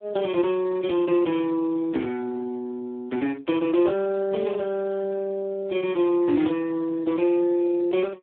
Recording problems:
phone line; 240 Hz to 3.3 kHz, Speex

